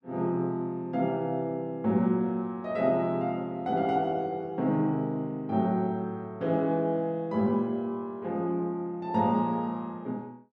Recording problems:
none

